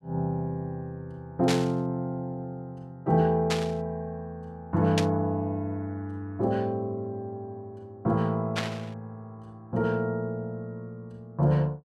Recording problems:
burst of static; 4 times, first at 1.5 s; peak +4 dB vs average level

